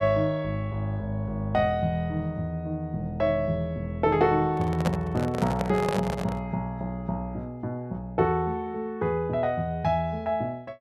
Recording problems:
handling noise; from 4.5 to 6.5 s; peak +4 dB vs average level

